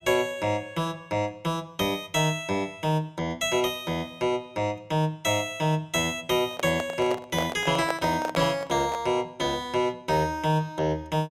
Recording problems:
microphone handling noise; from 6.5 to 9 s; peak +1 dB vs average level

